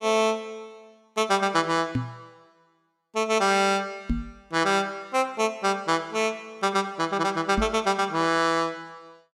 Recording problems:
knock on the microphone; at 2 s, at 4 s and at 7.5 s; peak +2 dB vs average level

